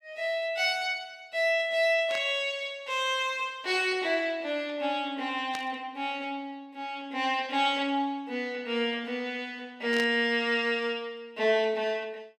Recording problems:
burst of static; at 2 s, at 5.5 s and at 10 s; peak -4 dB vs average level

